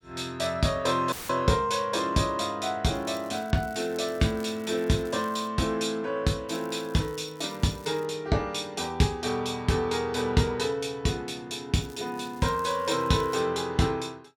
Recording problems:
dropout; at 1 s; filled with static
crackling; from 3 to 5.5 s, from 6.5 to 8 s and from 12 to 13 s; loose cable, SNR 24 dB

